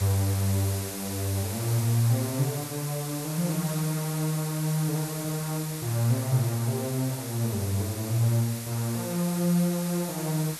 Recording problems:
background hiss; slope 0 dB per octave, SNR 8 dB

